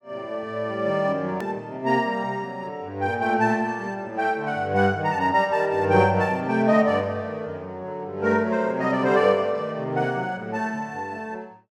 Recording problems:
hard cut with a click; at 1.5 s

